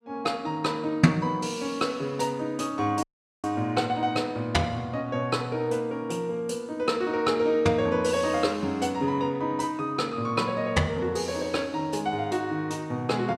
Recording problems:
dropout; at 3 s

